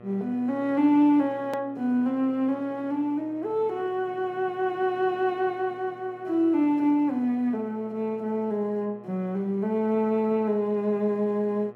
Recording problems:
hum; 60 Hz, harmonics up to 2 kHz, SNR 24 dB
hard cut with a click; at 1.5 s

